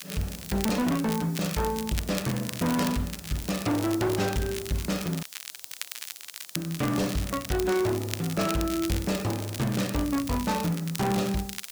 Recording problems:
lossy compression; AAC, log-spectral distance 2 dB
distortion; hard clipping, signal-to-distortion ratio 10 dB
hiss; SNR 17 dB
crackle; vinyl, SNR 9 dB
dropout; at 5 s for 1.5 s

